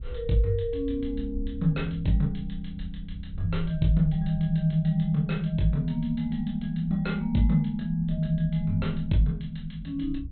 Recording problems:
low-pass filter; nothing above 4.1 kHz
wind noise; below 68 Hz, SNR 14 dB

